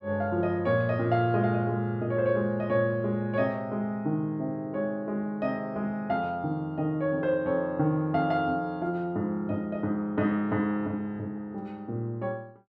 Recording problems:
none

